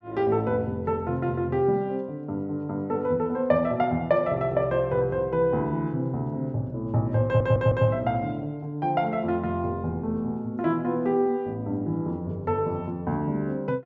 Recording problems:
audio stuttering; at 7.5 s

